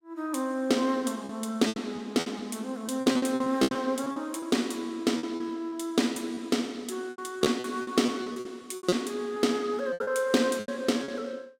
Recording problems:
packet loss; 13% of the sound replaced, filled with repeated pitch periods

